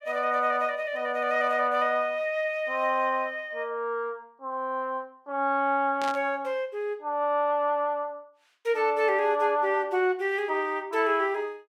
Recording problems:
burst of static; at 6 s; peak -7 dB vs average level

